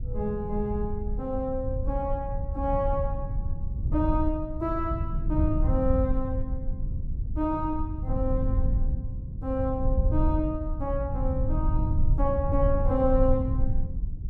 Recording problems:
rumble; below 88 Hz, SNR 0 dB

